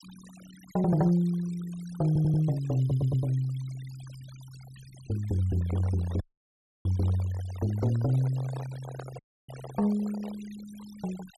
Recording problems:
noise reduction artefacts; signal-to-artefact ratio 22 dB
audio stuttering; at 2 s and at 3 s
microphone handling noise; from 5.5 to 10 s; peak -10 dB vs average level
audio cutting out; at 6 s for 0.5 s and at 9 s

